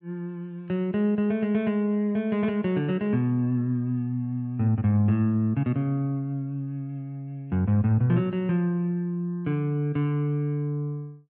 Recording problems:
none

